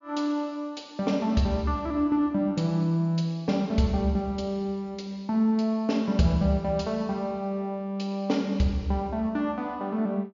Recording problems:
treble missing; nothing above 7.2 kHz

